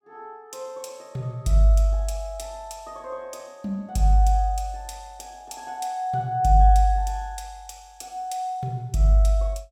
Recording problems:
none

